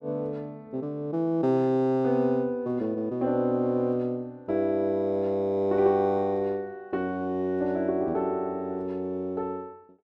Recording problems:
none

